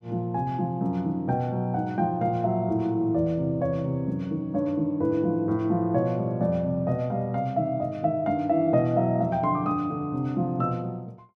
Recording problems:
none

